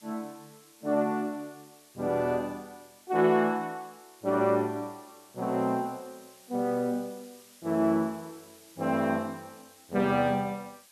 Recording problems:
background hiss; slope +1 dB per octave, SNR 25 dB

